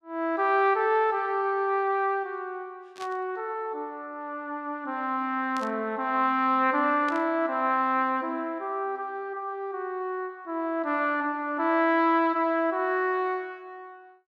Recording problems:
static burst; at 3 s, at 5.5 s and at 7 s; peak -11 dB vs average level

